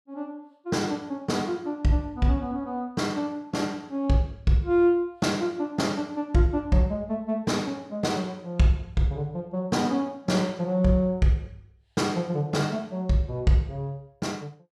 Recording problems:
none

